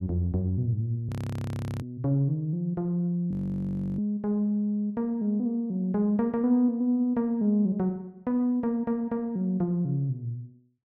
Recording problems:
audio freezing; at 1 s for 0.5 s and at 3.5 s for 0.5 s

